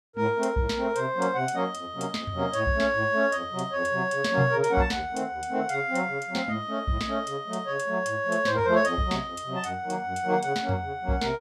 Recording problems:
none

